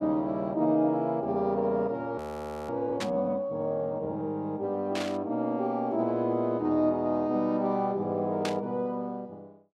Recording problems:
audio freezing; at 2 s for 0.5 s
burst of static; at 3 s, at 5 s and at 8.5 s; peak -1 dB vs average level

